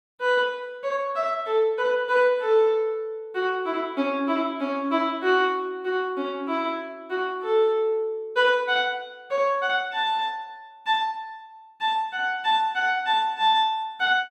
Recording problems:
none

